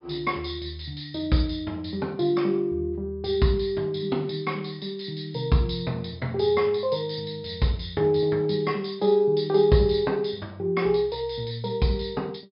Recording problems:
treble cut off; nothing above 5.5 kHz

